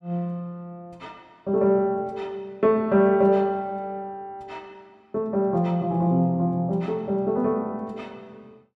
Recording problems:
none

